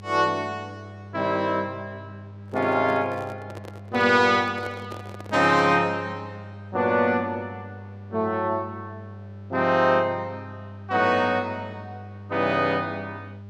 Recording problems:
electrical hum; 50 Hz, harmonics up to 800 Hz, SNR 17 dB
microphone handling noise; from 2.5 to 6 s; peak -10 dB vs average level

